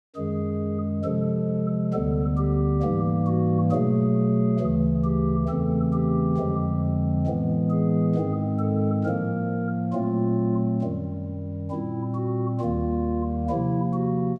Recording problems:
none

